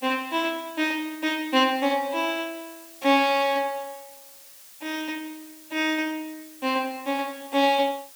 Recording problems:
hiss; slope +2 dB per octave, SNR 20 dB

